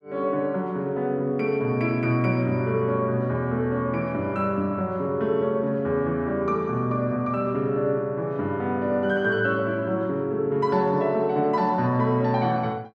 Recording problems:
none

